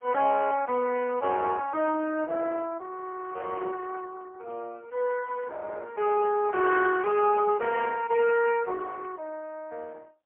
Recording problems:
telephone audio; 260 Hz to 2.8 kHz, AMR-NB, then MP3

